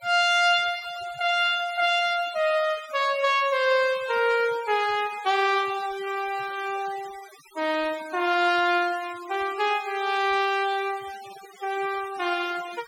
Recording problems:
denoising artefacts; signal-to-artefact ratio 19 dB

